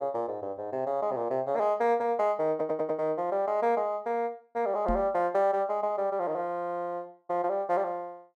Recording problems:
audio stuttering; at 2.5 s
knock on the microphone; at 5 s; peak 0 dB vs average level

